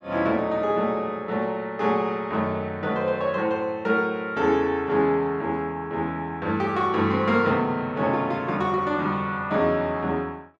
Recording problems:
none

